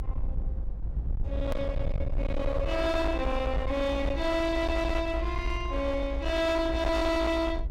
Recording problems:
distortion; hard clipping, uneven, signal-to-distortion ratio 8 dB
low-frequency rumble; below 74 Hz, SNR 5 dB
hard cut with a click; at 1.5 s

